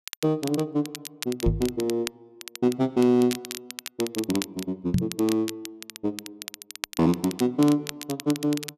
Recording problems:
crackling; vinyl, SNR 11 dB
microphone thump; at 1.5 s and at 5 s; peak +6 dB vs average level

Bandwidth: 13.5 kHz